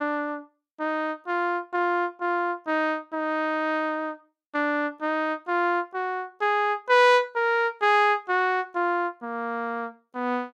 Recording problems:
none

